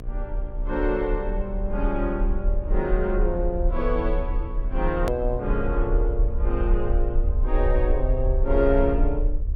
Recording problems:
electrical hum; 60 Hz, harmonics up to 720 Hz, SNR 16 dB
low-frequency rumble; below 44 Hz, strongest tone 34 Hz, SNR 1 dB
edit click; at 5 s

